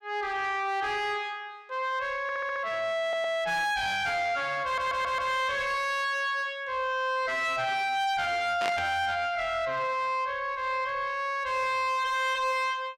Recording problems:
distorted audio; soft clipping, signal-to-distortion ratio 8 dB
stutter; at 2 s, at 3 s and at 4.5 s
burst of static; at 8.5 s; peak -1 dB vs average level

